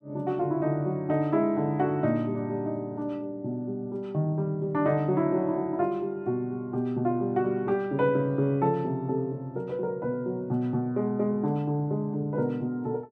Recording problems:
none

